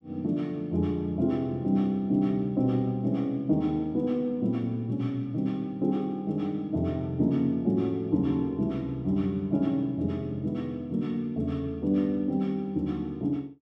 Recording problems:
none

